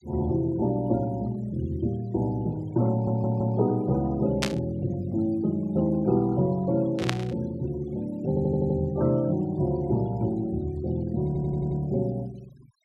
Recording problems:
denoising artefacts; signal-to-artefact ratio 27 dB
audio stuttering; at 3 s, at 8.5 s and at 11 s
static burst; at 4.5 s and at 7 s; peak +4 dB vs average level

